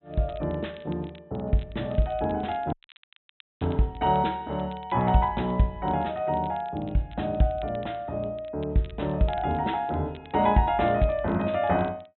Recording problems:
low-pass filter; nothing above 3.9 kHz
crackling; vinyl, SNR 27 dB
dropout; at 2.5 s for 1 s

